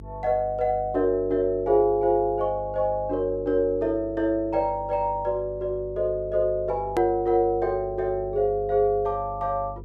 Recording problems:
hum; 50 Hz, harmonics up to 450 Hz, SNR 16 dB
edit click; at 7 s

